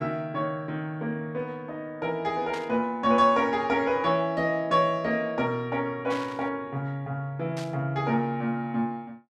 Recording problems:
static burst; at 2.5 s, at 6 s and at 7.5 s; peak -8 dB vs average level

